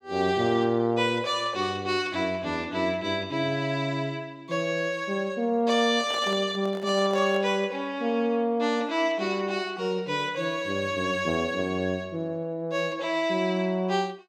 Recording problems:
handling noise; from 6 to 7.5 s; peak -7 dB vs average level

